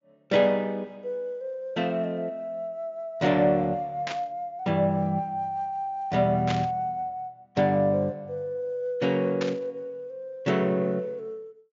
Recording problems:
low-pass filter; nothing above 7.3 kHz
burst of static; at 4 s, at 6.5 s and at 9.5 s; peak -1 dB vs average level

